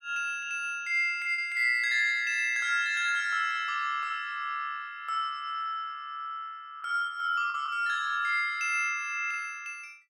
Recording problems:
packet loss; 1.2% of the sound replaced, filled with the last packet

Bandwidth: 15 kHz